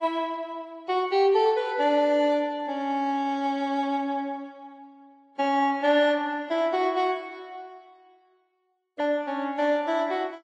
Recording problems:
codec artefacts; AAC, then Vorbis, log-spectral distance 2 dB

